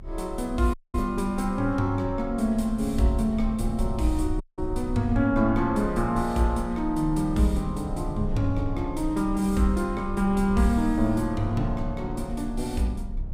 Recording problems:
low-frequency rumble; below 56 Hz, strongest tone 30 Hz, SNR 11 dB
wind noise; below 90 Hz, SNR 14 dB
audio cutting out; at 0.5 s and at 4.5 s

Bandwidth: 15.5 kHz